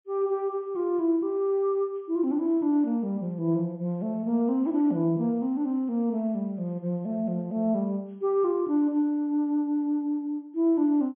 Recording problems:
low-pass filter; nothing above 3.4 kHz

